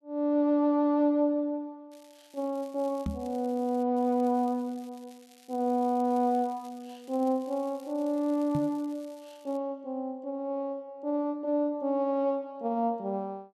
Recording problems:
crackling; from 2 to 4 s and from 4 to 9.5 s; loose cable, SNR 28 dB
microphone thump; at 3 s and at 8.5 s; peak 0 dB vs average level

